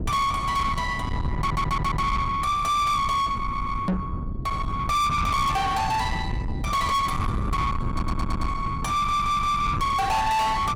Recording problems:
distorted audio; soft clipping, signal-to-distortion ratio 7 dB
rumble; below 840 Hz, SNR 5 dB
stutter; 4 times, first at 1.5 s
microphone thump; at 4 s; peak +3 dB vs average level

